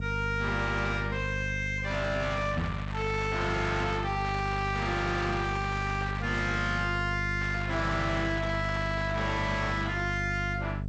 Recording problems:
lossy codec; G.722, log-spectral distance 2 dB, nothing above 7.6 kHz
distorted audio; soft clipping, signal-to-distortion ratio 5 dB
hum; 50 Hz, harmonics up to 500 Hz, SNR 5 dB
crackling; from 2 to 4 s, from 4.5 to 6.5 s and from 7.5 to 10 s; loose cable, SNR 11 dB
knock on the microphone; at 2.5 s; peak +2 dB vs average level

